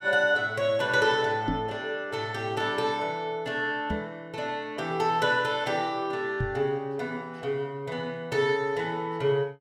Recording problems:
knock on the microphone; at 1.5 s, at 4 s and at 6.5 s; peak +2 dB vs average level

